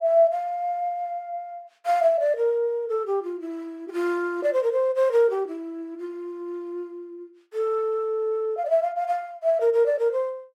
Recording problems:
none

